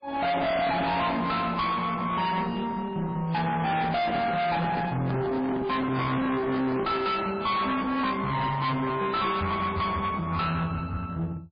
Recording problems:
lossy compression; MP3, log-spectral distance 3 dB, nothing above 4.5 kHz
distorted audio; hard clipping, uneven, signal-to-distortion ratio 4 dB
microphone handling noise; from 3.5 to 7 s; peak -1 dB vs average level

